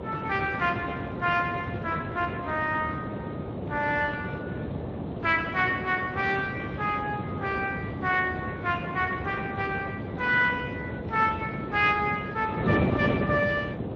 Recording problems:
lossy compression; Speex, then AAC, log-spectral distance 4 dB
wind noise; below 490 Hz, SNR 5 dB

